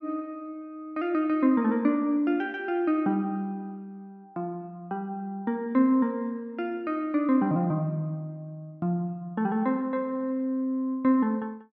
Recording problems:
none

